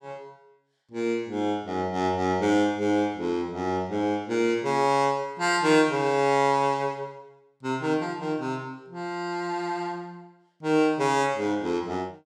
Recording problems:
none

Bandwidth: 17.5 kHz